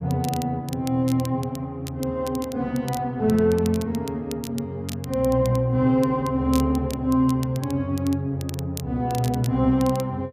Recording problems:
crackling; vinyl, SNR 18 dB

